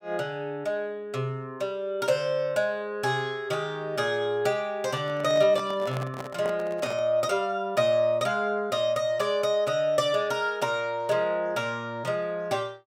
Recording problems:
handling noise; from 5 to 7 s; peak -4 dB vs average level

